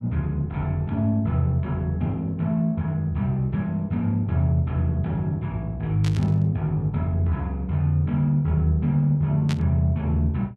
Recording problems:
burst of static; at 6 s and at 9.5 s; peak -6 dB vs average level

